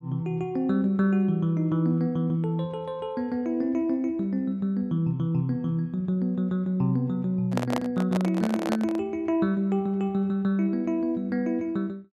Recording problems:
handling noise; from 7.5 to 9 s; peak +1 dB vs average level

